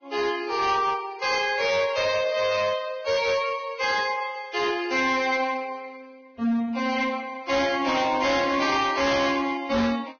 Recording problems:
lossy compression; Vorbis, log-spectral distance 4 dB, nothing above 6.3 kHz
distortion; hard clipping, signal-to-distortion ratio 11 dB
static burst; at 5 s and at 8 s; peak -12 dB vs average level

